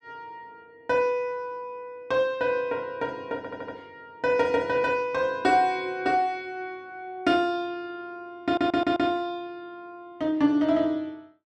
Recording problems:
stutter; at 3.5 s and at 8.5 s

